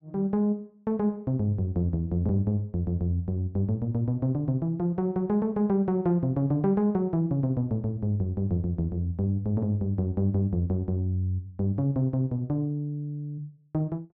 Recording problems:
none

